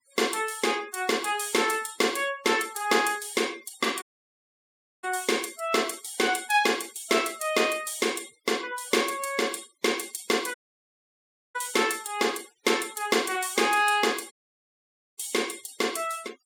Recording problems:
denoising artefacts; signal-to-artefact ratio 20 dB
audio cutting out; at 4 s for 1 s, at 11 s for 1 s and at 14 s for 1 s

